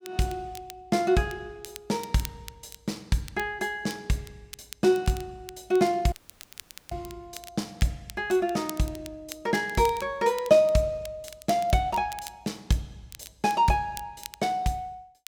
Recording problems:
crackle; vinyl, SNR 18 dB
dropout; at 6 s for 1 s

